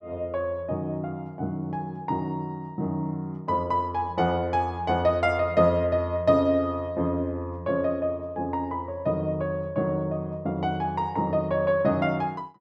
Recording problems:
none

